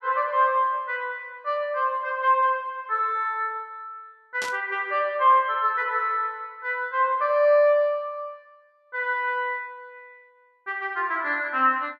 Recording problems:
static burst; at 4.5 s; peak -5 dB vs average level

